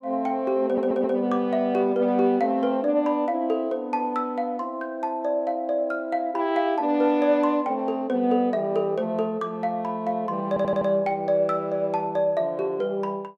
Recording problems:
audio stuttering; at 0.5 s and at 10 s

